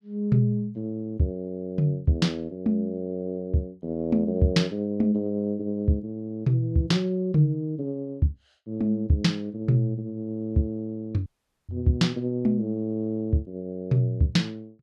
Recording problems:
audio cutting out; at 11 s

